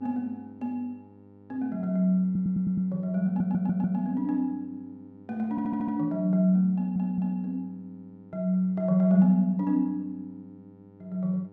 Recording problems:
electrical hum; 50 Hz, harmonics up to 1.4 kHz, SNR 26 dB
stutter; 4 times, first at 2.5 s

